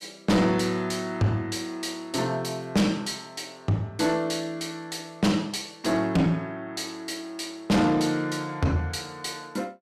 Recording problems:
distortion; soft clipping, signal-to-distortion ratio 7 dB

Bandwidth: 14.5 kHz